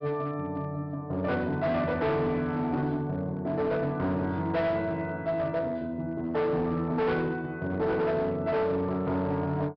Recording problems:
treble cut off; nothing above 5.5 kHz
distortion; hard clipping, uneven, signal-to-distortion ratio 11 dB

